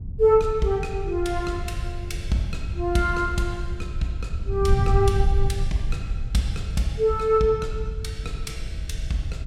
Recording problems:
wind noise; below 92 Hz, SNR 5 dB

